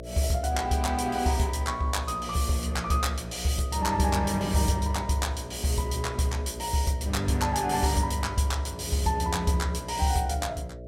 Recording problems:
hum; 60 Hz, harmonics up to 660 Hz, SNR 13 dB

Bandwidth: 16 kHz